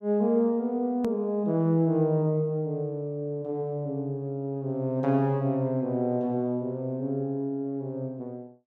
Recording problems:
hard cut with a click; at 1 s

